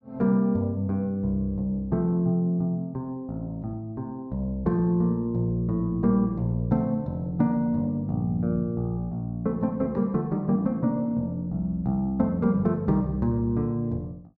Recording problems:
none

